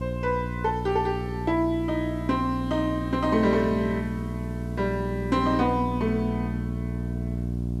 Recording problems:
electrical hum; 60 Hz, harmonics up to 660 Hz, SNR 5 dB
background hiss; slope -4 dB per octave, SNR 28 dB

